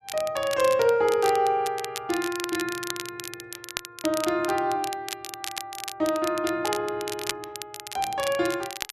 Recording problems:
crackling; vinyl, SNR 9 dB

